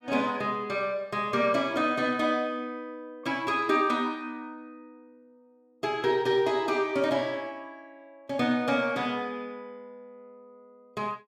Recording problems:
none

